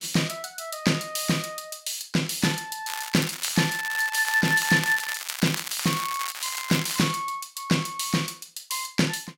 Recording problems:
crackle; from 3 to 7 s; loose cable, SNR 7 dB

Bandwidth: 16.5 kHz